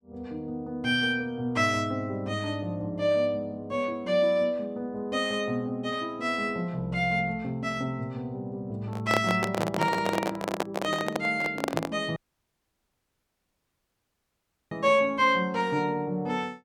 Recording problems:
microphone handling noise; from 9 to 12 s; peak +4 dB vs average level
dropout; at 12 s for 2.5 s

